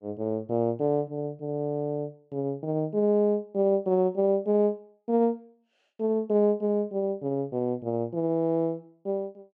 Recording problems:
none

